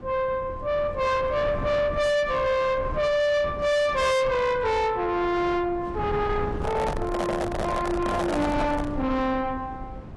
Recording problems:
lossy codec; AAC, log-spectral distance 2 dB, nothing above 11.3 kHz
distortion; soft clipping, signal-to-distortion ratio 7 dB
rumble; below 390 Hz, SNR 11 dB
microphone handling noise; from 6.5 to 9 s; peak +1 dB vs average level

